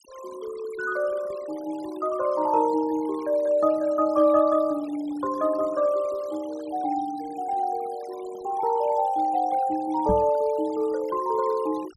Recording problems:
denoising artefacts; signal-to-artefact ratio 22 dB
knock on the microphone; at 10 s; peak 0 dB vs average level

